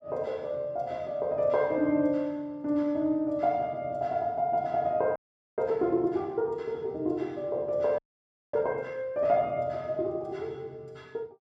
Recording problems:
audio freezing; at 5 s and at 8 s for 0.5 s

